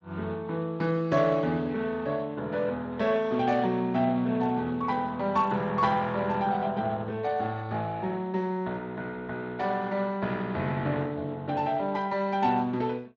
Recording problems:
codec artefacts; Speex, log-spectral distance 3 dB

